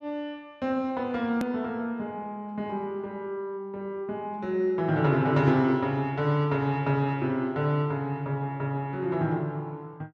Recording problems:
edit click; at 1.5 s

